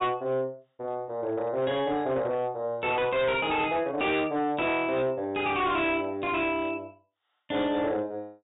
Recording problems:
treble missing; nothing above 4 kHz
distorted audio; hard clipping, signal-to-distortion ratio 10 dB

